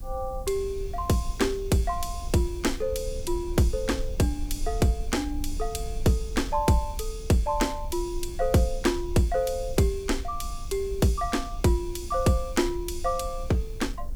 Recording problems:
background hiss; SNR 29 dB
rumble; below 56 Hz, strongest tone 22 Hz, SNR 10 dB

